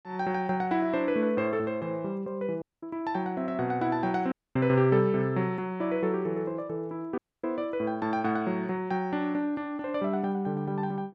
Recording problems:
dropout; at 2.5 s, at 4.5 s and at 7 s

